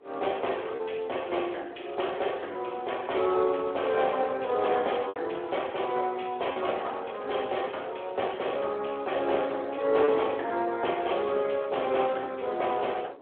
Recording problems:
phone line; 320 Hz to 3.4 kHz, Speex
wind noise; below 640 Hz, SNR 24 dB
packet loss; 1.5% of the sound replaced, filled with repeated pitch periods

